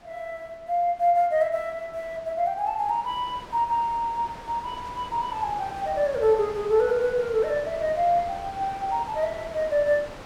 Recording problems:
wind noise; below 1.7 kHz, SNR 17 dB

